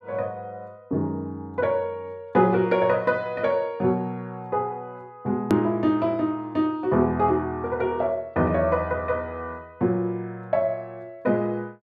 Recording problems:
click at an edit; at 5.5 s

